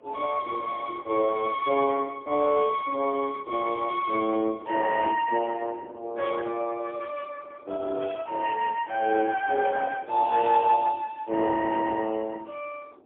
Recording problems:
phone line; 240 Hz to 2.6 kHz, AMR-NB, then MP3
wind noise; below 620 Hz, SNR 22 dB

